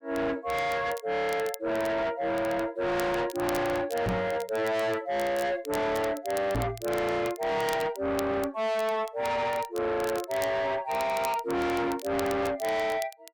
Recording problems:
distortion; soft clipping, signal-to-distortion ratio 6 dB
crackling; vinyl, SNR 17 dB
microphone bump; at 4 s and at 6.5 s; peak +4 dB vs average level

